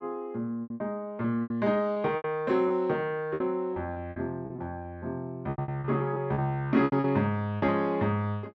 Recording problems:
packet loss; 12% of the sound replaced, filled with repeated pitch periods

